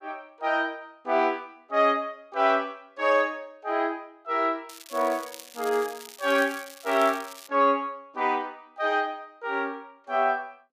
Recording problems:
crackle; from 4.5 to 7.5 s; loose cable, SNR 17 dB

